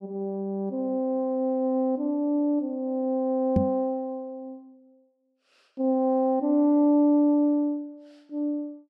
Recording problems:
microphone thump; at 3.5 s; peak +6 dB vs average level

